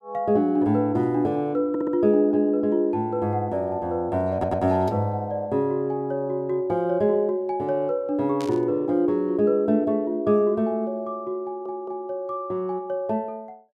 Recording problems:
audio stuttering; at 1.5 s, at 4.5 s and at 11 s
burst of static; at 8.5 s; peak -11 dB vs average level

